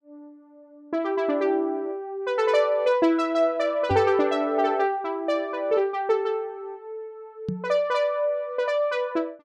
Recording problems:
microphone bump; at 4 s and at 7.5 s; peak 0 dB vs average level

